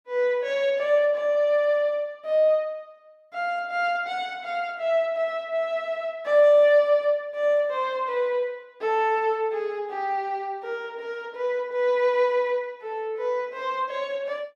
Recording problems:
none

